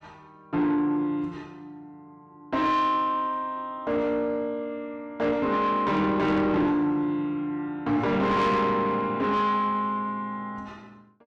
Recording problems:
distortion; soft clipping, signal-to-distortion ratio 11 dB

